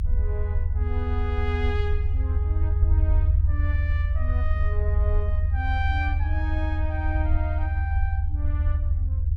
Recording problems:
rumble; below 80 Hz, SNR -10 dB

